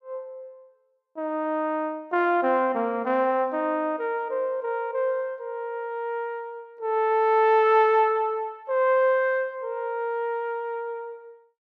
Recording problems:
none

